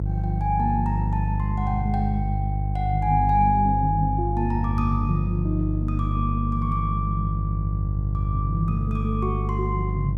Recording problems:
hum; 50 Hz, harmonics up to 350 Hz, SNR -1 dB

